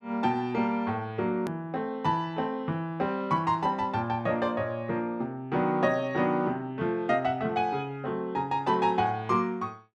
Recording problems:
edit click; at 1.5 s

